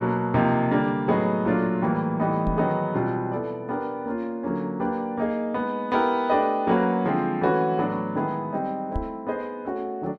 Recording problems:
microphone thump; at 2.5 s and at 9 s; peak -1 dB vs average level

